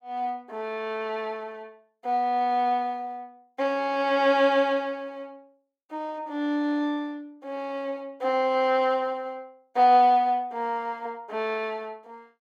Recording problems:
none

